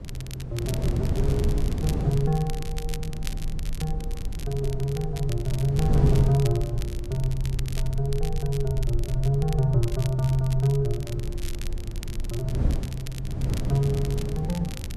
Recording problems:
low-frequency rumble; below 50 Hz, SNR 8 dB
wind noise; below 160 Hz, SNR 5 dB
crackle; vinyl, SNR 15 dB

